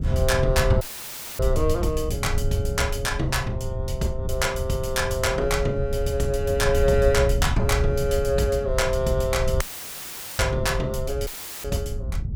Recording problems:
wind noise; below 100 Hz, SNR 4 dB
audio cutting out; at 1 s for 0.5 s, at 9.5 s for 1 s and at 11 s; filled with static

